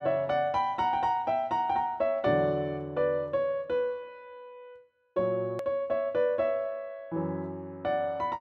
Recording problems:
click at an edit; at 5.5 s

